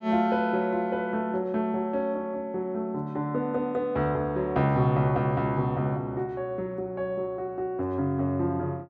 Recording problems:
none

